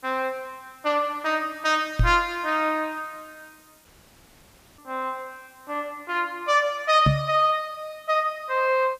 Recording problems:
hiss; slope -1 dB per octave, SNR 30 dB
knock on the microphone; at 2 s and at 7 s; peak +7 dB vs average level
audio cutting out; at 4 s for 1 s

